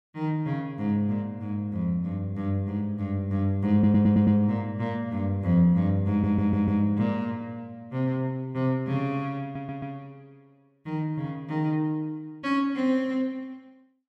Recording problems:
audio stuttering; at 3.5 s, at 6 s and at 9.5 s

